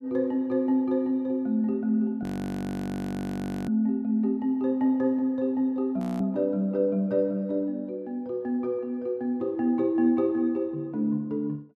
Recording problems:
audio freezing; at 2 s for 1.5 s and at 6 s

